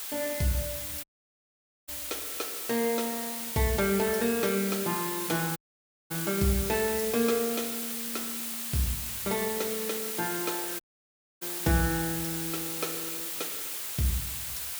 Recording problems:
hiss; slope +2 dB per octave, SNR 1 dB
audio cutting out; at 1 s for 1 s, at 5.5 s for 0.5 s and at 11 s for 0.5 s

